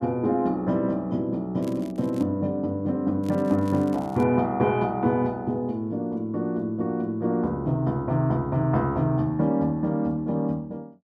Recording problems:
crackling; at 1.5 s and from 3 to 4 s; loose cable, SNR 27 dB

